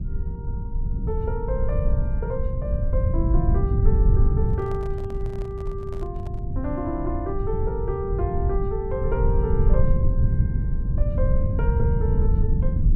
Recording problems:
low-frequency rumble; below 100 Hz, SNR -6 dB
handling noise; from 4.5 to 6.5 s; peak -9 dB vs average level

